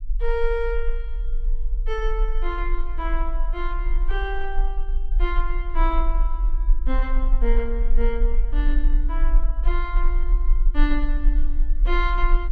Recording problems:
low-frequency rumble; below 38 Hz, strongest tone 20 Hz, SNR -5 dB

